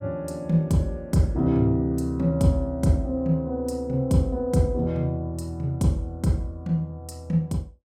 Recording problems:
none

